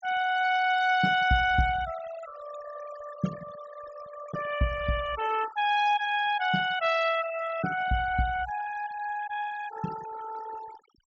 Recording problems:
low-pass filter; nothing above 8 kHz
noise reduction artefacts; signal-to-artefact ratio 13 dB

